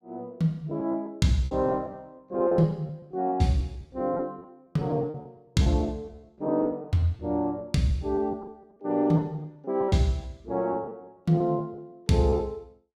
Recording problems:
lost packets; 11% of the sound replaced, filled with repeated pitch periods

